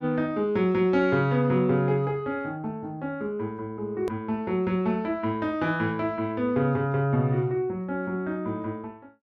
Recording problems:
hard cut with a click; at 4 s

